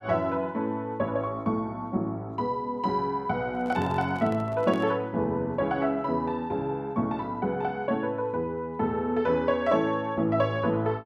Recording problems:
microphone handling noise; from 3.5 to 5 s; peak -7 dB vs average level

